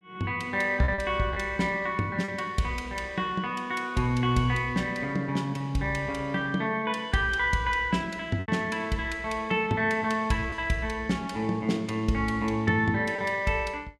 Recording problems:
lost packets; 2% of the sound replaced, filled with repeated pitch periods

